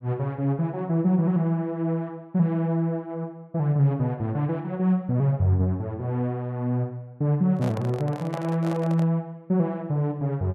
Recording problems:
microphone handling noise; from 7.5 to 9 s; peak -6 dB vs average level

